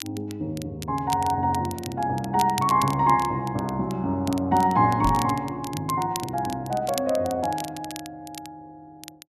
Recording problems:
crackle; vinyl, SNR 15 dB
microphone bump; at 5 s; peak -1 dB vs average level

